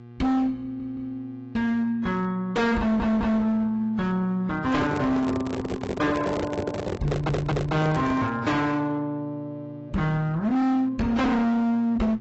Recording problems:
lossy compression; AAC, log-spectral distance 2 dB, nothing above 7.6 kHz
distortion; hard clipping, uneven, signal-to-distortion ratio 7 dB
hum; 60 Hz, harmonics up to 1.2 kHz, SNR 20 dB
stutter; at 0.5 s, at 3 s and at 7 s
microphone handling noise; from 4.5 to 8.5 s; peak +1 dB vs average level

